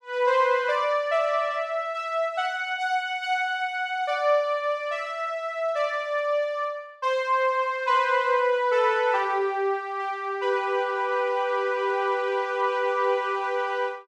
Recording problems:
none

